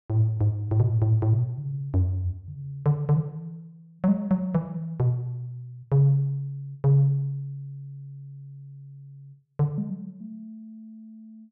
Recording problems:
none

